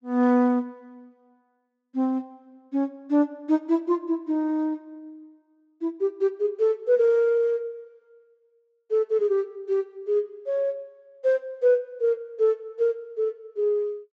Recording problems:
treble missing; nothing above 8 kHz

